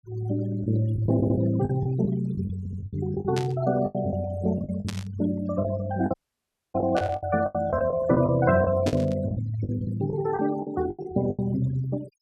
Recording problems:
noise reduction artefacts; signal-to-artefact ratio 15 dB
packet loss; 12% of the sound replaced, filled with the last packet
stutter; at 1 s and at 2.5 s
static burst; 4 times, first at 3.5 s; peak -4 dB vs average level
dropout; at 6 s for 0.5 s

